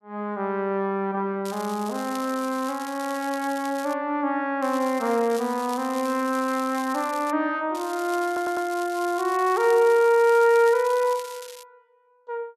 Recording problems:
crackle; from 1.5 to 4 s, from 4.5 to 7.5 s and from 8 to 12 s; loose cable, SNR 18 dB
stutter; at 8.5 s

